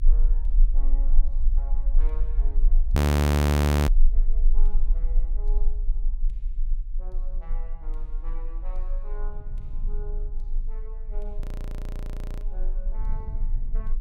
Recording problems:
rumble; below 38 Hz, strongest tone 24 Hz, SNR -20 dB
wind noise; below 98 Hz, SNR 0 dB
frozen audio; at 3 s for 1 s and at 11 s for 1 s

